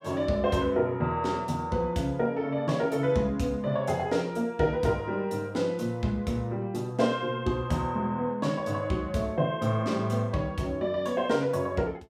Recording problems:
none

